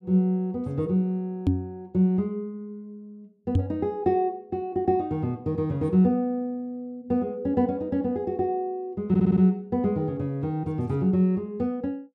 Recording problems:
microphone bump; at 1.5 s and at 3.5 s; peak +7 dB vs average level
audio stuttering; at 9 s

